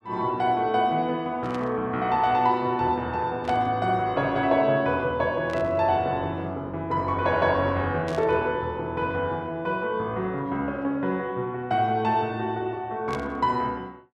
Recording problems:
static burst; 5 times, first at 1.5 s; peak -9 dB vs average level

